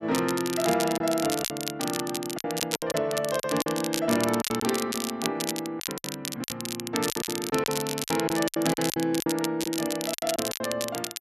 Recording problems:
crackle; vinyl, SNR 4 dB
packet loss; 12% of the sound replaced, filled with silence

